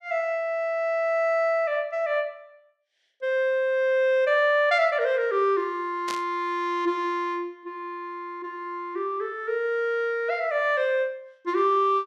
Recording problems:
burst of static; at 6 s; peak -5 dB vs average level

